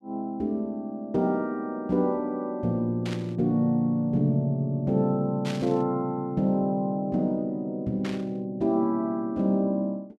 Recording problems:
burst of static; at 3 s, at 5.5 s and at 8 s; peak -6 dB vs average level

